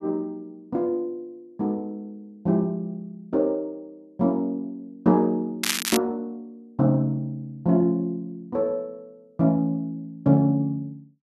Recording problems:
crackle; at 5.5 s; loose cable, SNR 1 dB

